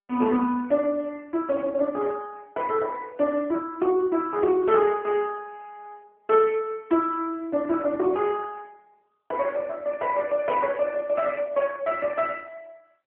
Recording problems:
phone line; 150 Hz to 3 kHz, AMR-NB

